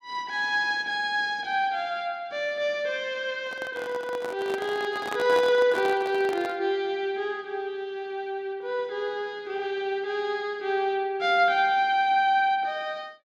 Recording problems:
handling noise; from 3.5 to 6.5 s; peak -3 dB vs average level

